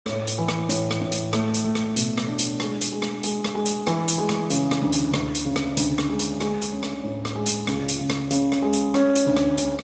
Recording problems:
lossy codec; Speex, log-spectral distance 7 dB, nothing above 8 kHz

